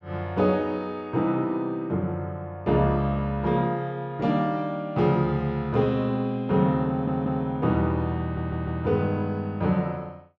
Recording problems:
audio stuttering; at 7 s and at 8 s

